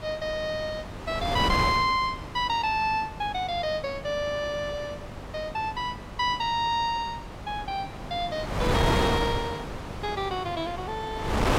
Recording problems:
hum; 50 Hz, harmonics up to 1.3 kHz, SNR 18 dB
wind noise; below 1.1 kHz, SNR 5 dB

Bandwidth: 16.5 kHz